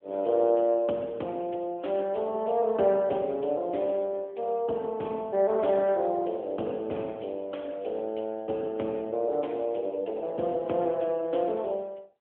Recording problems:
phone line; 170 Hz to 3.4 kHz, AMR-NB

